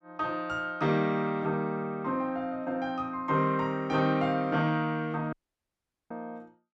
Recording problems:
dropout; at 5.5 s for 1 s

